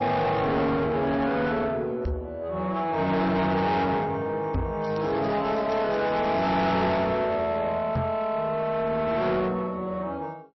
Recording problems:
codec artefacts; MP3, log-spectral distance 2 dB, nothing above 5.7 kHz
distortion; soft clipping, signal-to-distortion ratio 8 dB
microphone thump; at 2 s, at 4.5 s and at 8 s; peak +2 dB vs average level
crackle; from 5 to 6.5 s; loose cable, SNR 24 dB

